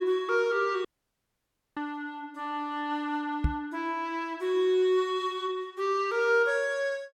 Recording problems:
dropout; at 1 s for 1 s
microphone bump; at 3.5 s; peak +5 dB vs average level

